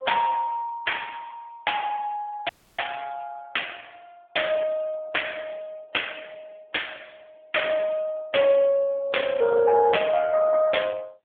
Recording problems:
telephone audio; 340 Hz to 3.4 kHz, AMR-NB
dropout; at 2.5 s

